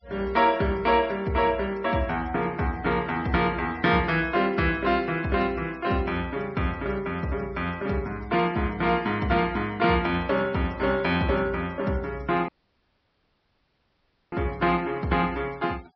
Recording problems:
treble cut off; nothing above 5.5 kHz
noise reduction artefacts; signal-to-artefact ratio 25 dB
audio cutting out; at 12 s for 2 s

